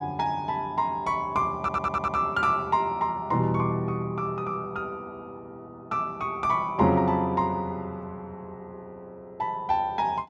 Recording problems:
stutter; at 1.5 s

